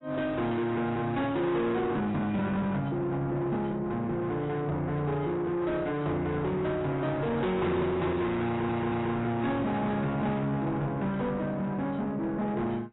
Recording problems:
lossy compression; AAC, log-spectral distance 2 dB, nothing above 3.8 kHz
distorted audio; soft clipping, signal-to-distortion ratio 8 dB
audio stuttering; at 8.5 s

